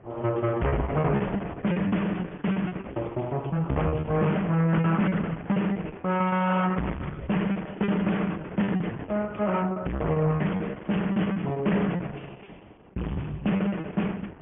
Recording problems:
low-pass filter; nothing above 3.2 kHz
lossy codec; Opus, log-spectral distance 5 dB
distortion; soft clipping, signal-to-distortion ratio 6 dB
wind on the microphone; below 570 Hz, SNR 18 dB
packet loss; 17% of the sound replaced, filled with repeated pitch periods

